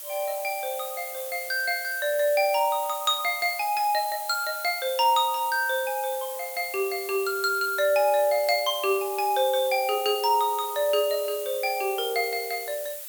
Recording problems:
background hiss; slope +2 dB per octave, SNR 10 dB

